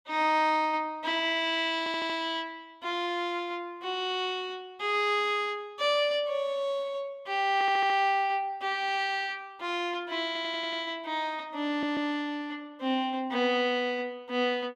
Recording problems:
stutter; 4 times, first at 2 s

